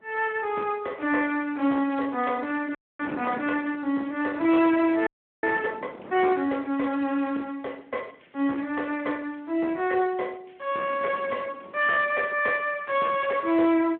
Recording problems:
telephone audio; 190 Hz to 3.2 kHz, Speex
distorted audio; hard clipping, uneven, signal-to-distortion ratio 10 dB
wind on the microphone; below 860 Hz, SNR 17 dB
frozen audio; at 3 s and at 5 s

